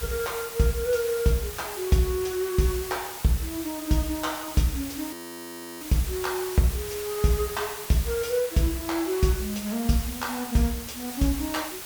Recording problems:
hiss; slope 0 dB per octave, SNR 9 dB
frozen audio; at 5 s for 0.5 s

